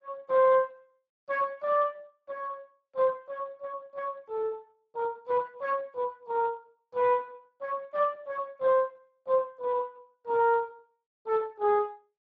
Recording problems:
lossy compression; Speex, log-spectral distance 2 dB

